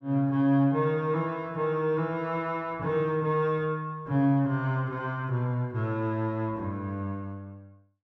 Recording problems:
none

